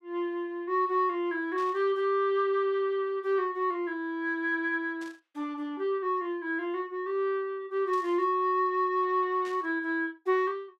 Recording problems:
burst of static; 4 times, first at 1.5 s; peak -15 dB vs average level

